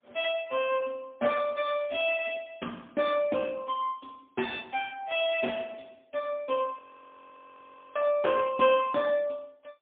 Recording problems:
phone line; 240 Hz to 3.5 kHz, AMR-NB, then MP3
frozen audio; at 7 s for 1 s

